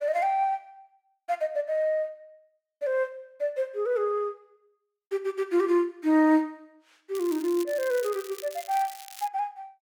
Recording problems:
crackle; from 7 to 9.5 s; loose cable, SNR 16 dB

